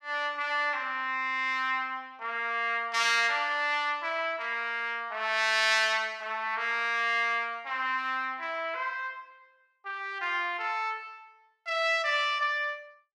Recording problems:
none

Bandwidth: 14.5 kHz